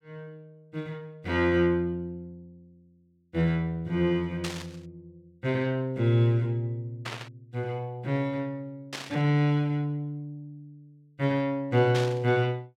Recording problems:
burst of static; 4 times, first at 4.5 s; peak -3 dB vs average level

